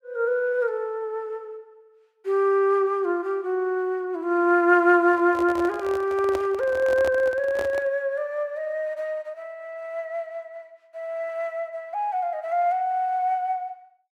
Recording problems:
microphone handling noise; from 5 to 8 s; peak -4 dB vs average level

